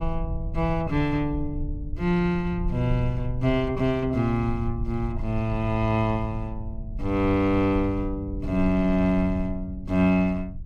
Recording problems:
rumble; below 82 Hz, SNR 10 dB

